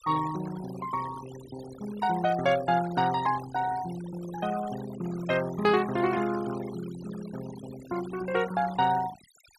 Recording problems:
noise reduction artefacts; signal-to-artefact ratio 14 dB

